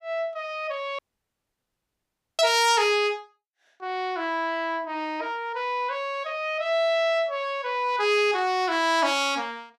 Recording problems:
dropout; at 1 s for 1.5 s

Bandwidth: 15.5 kHz